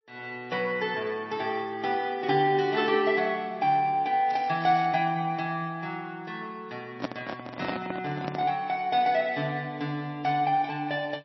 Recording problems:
codec artefacts; MP3, log-spectral distance 2 dB, nothing above 5.7 kHz
crackle; at 4.5 s; loose cable, SNR 21 dB
handling noise; from 7 to 8.5 s; peak +1 dB vs average level

